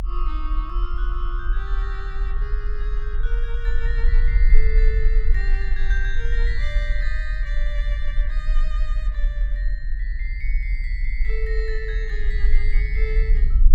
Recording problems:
low-frequency rumble; below 42 Hz, strongest tone 20 Hz, SNR -10 dB

